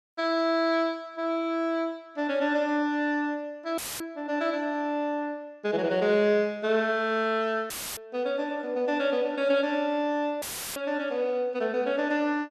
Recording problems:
dropout; at 4 s, at 7.5 s and at 10 s; filled with static

